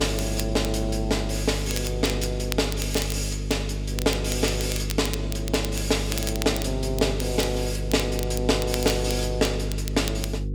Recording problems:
hum; 50 Hz, harmonics up to 500 Hz, SNR 3 dB
crackle; vinyl, SNR 10 dB

